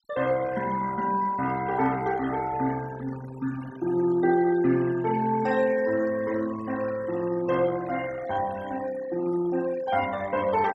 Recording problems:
denoising artefacts; signal-to-artefact ratio 16 dB

